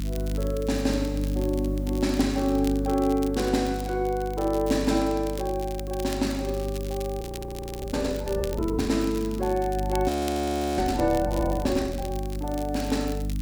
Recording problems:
hum; 50 Hz, harmonics up to 300 Hz, SNR 6 dB
background hiss; SNR 30 dB
crackling; vinyl, SNR 16 dB
audio freezing; at 7 s for 0.5 s and at 10 s for 0.5 s

